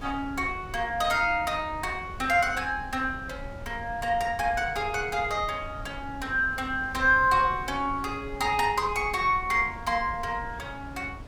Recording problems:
wind on the microphone; below 200 Hz, SNR 16 dB

